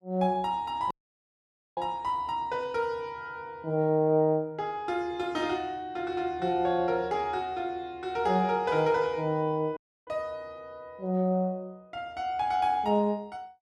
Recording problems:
dropout; at 1 s for 1 s and at 10 s

